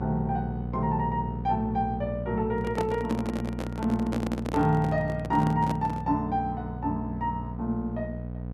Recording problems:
electrical hum; 60 Hz, harmonics up to 780 Hz, SNR 7 dB
microphone handling noise; from 2.5 to 6 s; peak -1 dB vs average level

